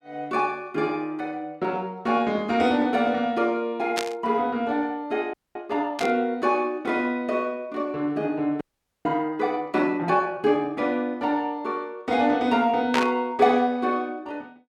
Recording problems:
burst of static; at 4 s, at 6 s and at 13 s; peak +3 dB vs average level
audio freezing; at 5.5 s and at 8.5 s

